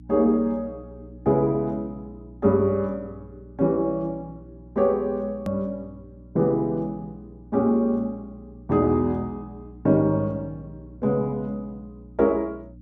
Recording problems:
hum; 60 Hz, harmonics up to 300 Hz, SNR 21 dB
hard cut with a click; at 5.5 s

